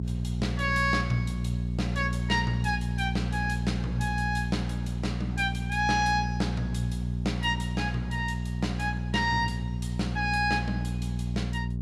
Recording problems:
electrical hum; 60 Hz, harmonics up to 420 Hz, SNR 1 dB

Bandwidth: 15.5 kHz